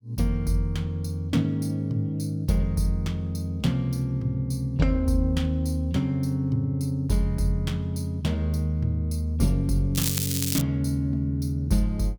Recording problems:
crackling; at 10 s; loose cable, SNR 2 dB

